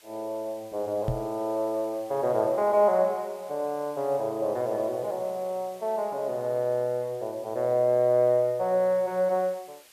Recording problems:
background hiss; slope +2 dB per octave, SNR 26 dB
microphone thump; at 1 s; peak +1 dB vs average level

